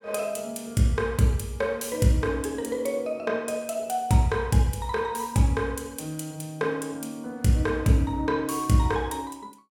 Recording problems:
none

